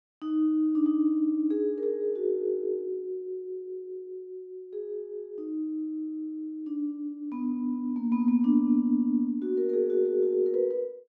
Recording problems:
none

